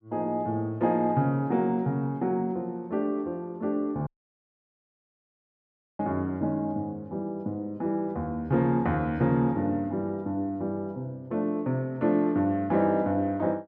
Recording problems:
audio cutting out; at 4 s for 2 s

